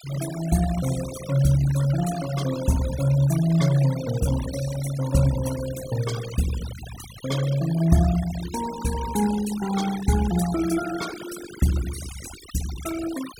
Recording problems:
noise reduction artefacts; signal-to-artefact ratio 13 dB

